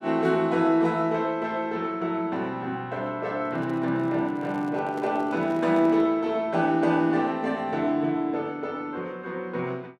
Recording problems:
handling noise; from 3.5 to 6 s; peak -9 dB vs average level

